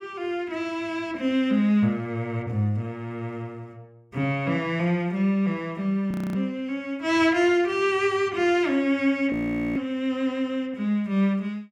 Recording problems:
frozen audio; at 6 s and at 9.5 s

